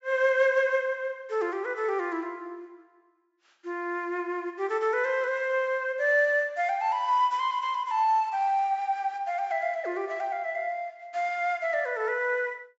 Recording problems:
low-pass filter; nothing above 7.5 kHz

